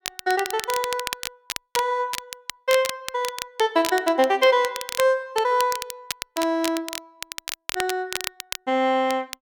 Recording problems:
crackling; vinyl, SNR 9 dB

